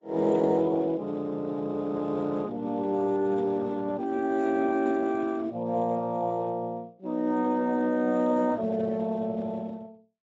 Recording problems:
codec artefacts; MP3, then Speex, log-spectral distance 2 dB, nothing above 7.3 kHz

